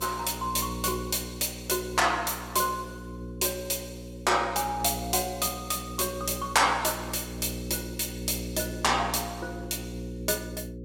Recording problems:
mains hum; 60 Hz, harmonics up to 540 Hz, SNR 10 dB

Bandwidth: 16.5 kHz